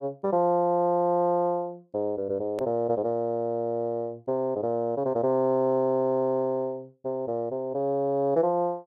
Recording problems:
hard cut with a click; at 2.5 s

